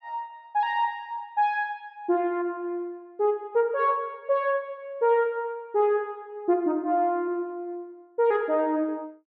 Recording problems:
none

